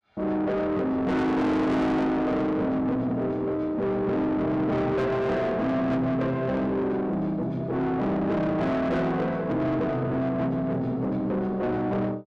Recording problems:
distortion; soft clipping, signal-to-distortion ratio 7 dB

